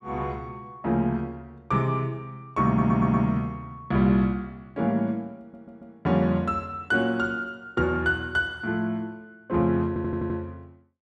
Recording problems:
stutter; at 2.5 s, at 5.5 s and at 10 s

